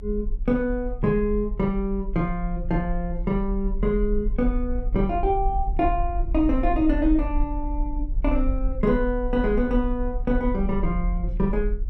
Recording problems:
rumble; below 44 Hz, SNR 5 dB

